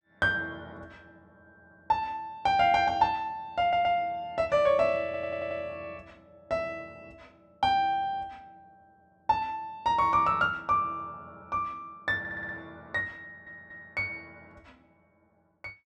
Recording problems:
audio stuttering; 4 times, first at 3.5 s

